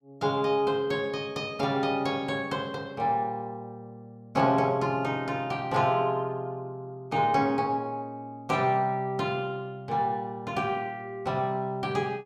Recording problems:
none

